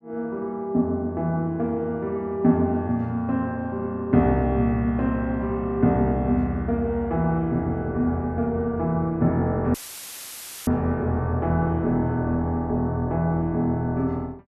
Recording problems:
dropout; at 9.5 s for 1 s; filled with static

